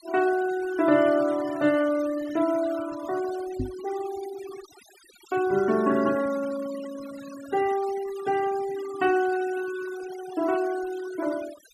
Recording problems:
noise reduction artefacts; signal-to-artefact ratio 16 dB
microphone thump; at 3.5 s; peak 0 dB vs average level

